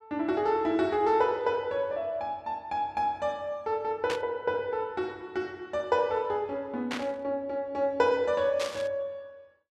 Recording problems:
static burst; at 4 s, at 7 s and at 8.5 s; peak -1 dB vs average level

